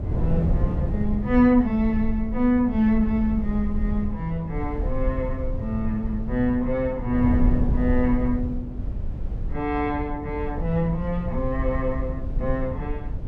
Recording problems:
rumble; below 68 Hz, SNR 8 dB
wind on the microphone; below 140 Hz, SNR 7 dB

